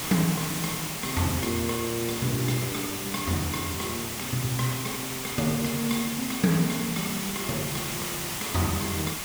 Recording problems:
background hiss; slope -1 dB per octave, SNR 2 dB

